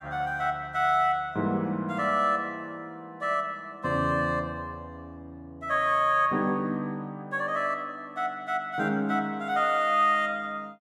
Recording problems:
none

